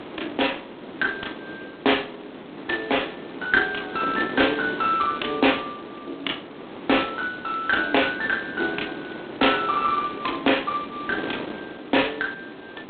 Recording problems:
telephone audio; 240 Hz to 3.9 kHz, G.726
wind noise; below 940 Hz, SNR 12 dB

